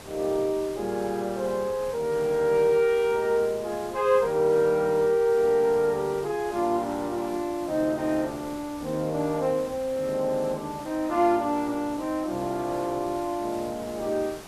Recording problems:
hiss; slope -4 dB per octave, SNR 17 dB

